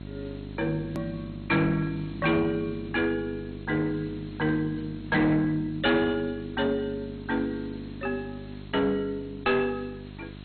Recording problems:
lossy codec; MP2, log-spectral distance 14 dB, nothing above 4 kHz
distorted audio; hard clipping, uneven, signal-to-distortion ratio 10 dB
hum; 50 Hz, harmonics up to 1 kHz, SNR 13 dB
background hiss; SNR 26 dB
hard cut with a click; at 1 s

